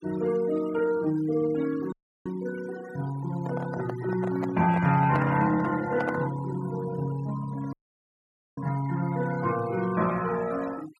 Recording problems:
noise reduction artefacts; signal-to-artefact ratio 17 dB
dropout; at 2 s and at 7.5 s for 1 s
microphone handling noise; from 3.5 to 6.5 s; peak -1 dB vs average level

